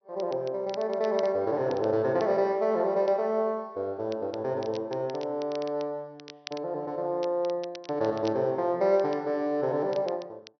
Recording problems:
low-pass filter; nothing above 6 kHz
crackle; vinyl, SNR 21 dB

